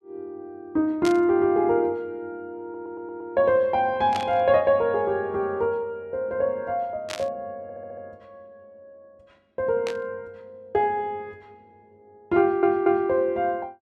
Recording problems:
static burst; 4 times, first at 1 s; peak -5 dB vs average level
audio stuttering; at 2.5 s, at 7.5 s and at 12 s

